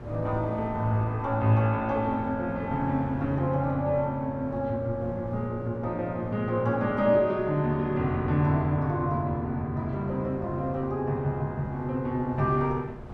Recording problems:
electrical hum; 60 Hz, harmonics up to 1.3 kHz, SNR 20 dB
wind on the microphone; below 340 Hz, SNR 19 dB

